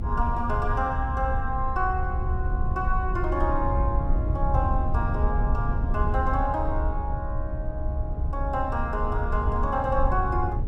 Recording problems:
low-frequency rumble; below 78 Hz, SNR 0 dB

